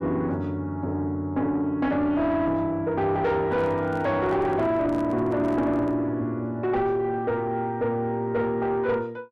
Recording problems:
distortion; soft clipping, signal-to-distortion ratio 10 dB
microphone handling noise; from 3.5 to 6 s; peak -8 dB vs average level

